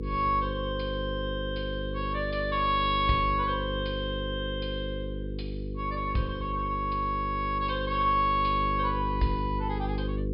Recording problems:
treble missing; nothing above 5.5 kHz
hum; 50 Hz, harmonics up to 500 Hz, SNR 5 dB

